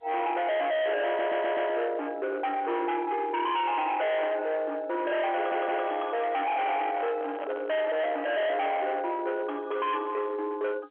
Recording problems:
phone line; 990 Hz to 3.3 kHz, G.711
distortion; hard clipping, uneven, signal-to-distortion ratio 6 dB
stutter; at 1 s and at 5.5 s
handling noise; from 6.5 to 9 s; peak -4 dB vs average level

